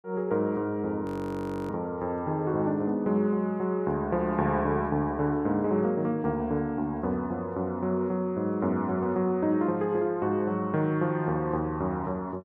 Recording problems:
frozen audio; at 1 s for 0.5 s

